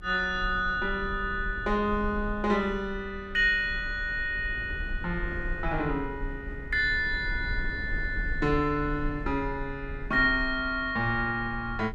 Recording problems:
rumble; below 62 Hz, strongest tone 30 Hz, SNR 11 dB

